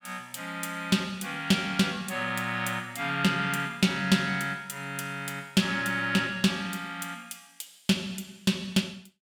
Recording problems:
none

